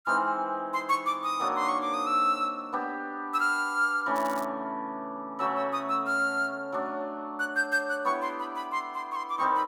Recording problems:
crackling; at 4 s; loose cable, SNR 20 dB

